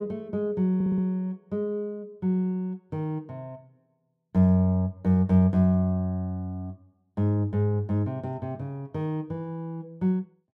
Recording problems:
stutter; at 1 s

